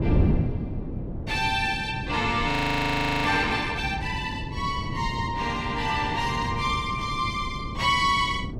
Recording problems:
wind on the microphone; below 240 Hz, SNR 6 dB
audio freezing; at 2.5 s for 0.5 s

